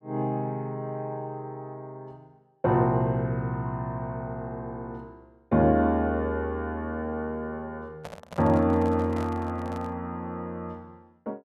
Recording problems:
microphone handling noise; from 8 to 10 s; peak -7 dB vs average level

